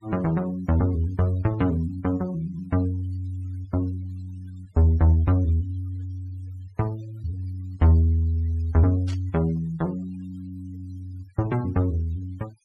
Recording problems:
noise reduction artefacts; signal-to-artefact ratio 26 dB
static burst; at 9 s; peak -14 dB vs average level

